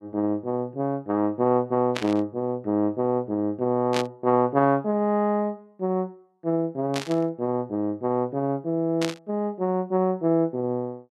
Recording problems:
burst of static; 4 times, first at 2 s; peak 0 dB vs average level

